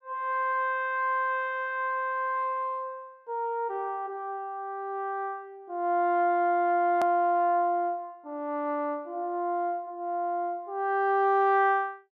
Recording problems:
click at an edit; at 7 s

